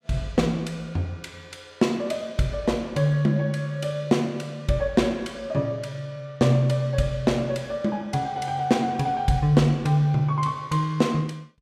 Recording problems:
none

